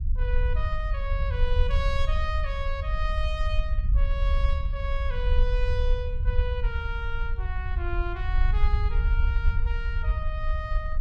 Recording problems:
low-frequency rumble; below 62 Hz, SNR -7 dB

